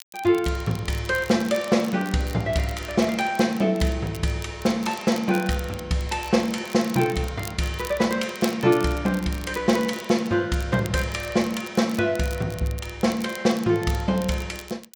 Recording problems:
crackle; vinyl, SNR 18 dB

